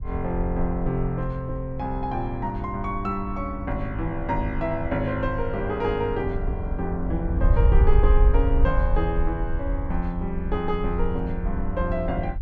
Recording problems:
wind on the microphone; below 60 Hz, SNR 1 dB

